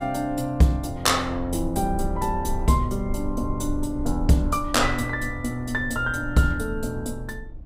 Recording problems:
rumble; below 58 Hz, SNR 11 dB

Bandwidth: 15.5 kHz